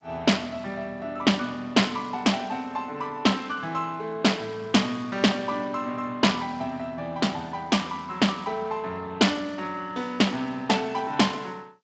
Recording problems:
lossy compression; G.722, then Speex, log-spectral distance 4 dB, nothing above 7.6 kHz

